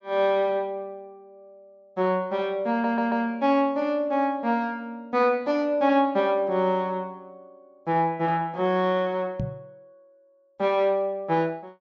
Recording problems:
treble cut off; nothing above 8 kHz
stutter; at 2.5 s
knock on the microphone; at 9.5 s; peak -2 dB vs average level

